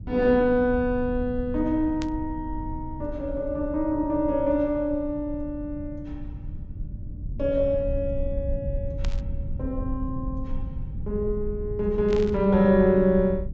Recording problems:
low-pass filter; nothing above 8 kHz
low-frequency rumble; below 94 Hz, SNR 10 dB
burst of static; at 2 s, at 9 s and at 12 s; peak -9 dB vs average level

